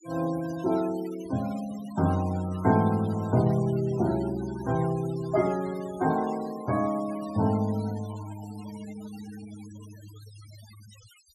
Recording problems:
denoising artefacts; signal-to-artefact ratio 19 dB

